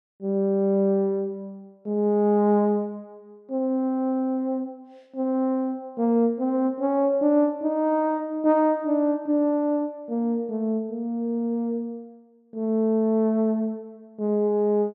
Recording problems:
none

